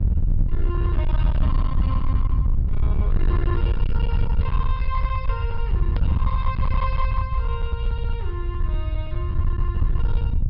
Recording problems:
low-pass filter; nothing above 5.5 kHz
distorted audio; hard clipping, uneven, signal-to-distortion ratio 7 dB
hum; 50 Hz, harmonics up to 600 Hz, SNR 18 dB
rumble; below 78 Hz, SNR -9 dB
click at an edit; at 6 s

